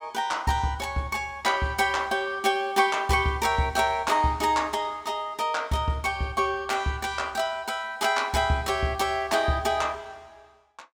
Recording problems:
none

